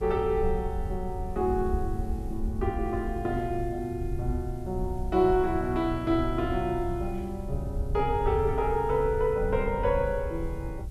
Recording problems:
background hiss; slope -2 dB per octave, SNR 29 dB
wind on the microphone; below 80 Hz, SNR 7 dB

